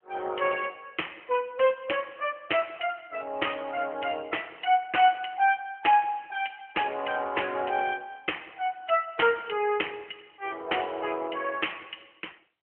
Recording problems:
phone line; 300 Hz to 3.2 kHz, AMR-NB

